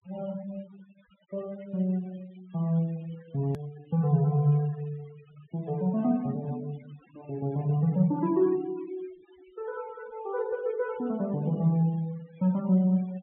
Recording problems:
treble missing; nothing above 3.3 kHz
noise reduction artefacts; signal-to-artefact ratio 24 dB
edit click; at 3.5 s

